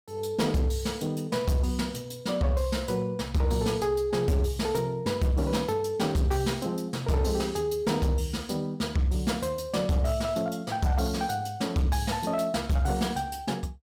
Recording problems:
distorted audio; hard clipping, signal-to-distortion ratio 12 dB

